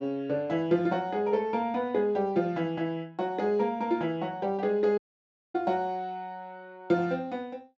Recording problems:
treble missing; nothing above 7.7 kHz
audio cutting out; at 5 s for 0.5 s

